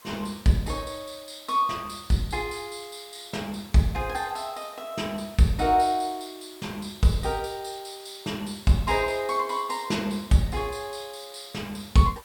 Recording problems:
hiss; SNR 22 dB

